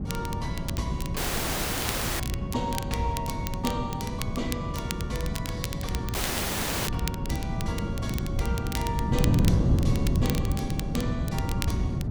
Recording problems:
wind on the microphone; below 200 Hz, SNR -5 dB
crackling; vinyl, SNR 5 dB
audio cutting out; at 1 s for 1 s and at 6 s for 0.5 s

